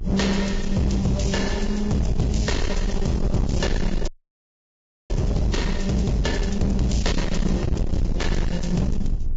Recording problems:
lossy compression; Vorbis, log-spectral distance 2 dB, nothing above 7.3 kHz
distorted audio; hard clipping, signal-to-distortion ratio 7 dB
electrical hum; 60 Hz, harmonics up to 1.1 kHz, SNR 22 dB
rumble; below 76 Hz, strongest tone 20 Hz, SNR 5 dB
audio freezing; at 4 s for 1 s

